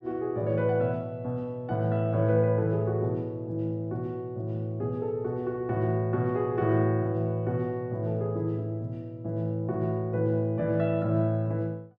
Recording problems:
none

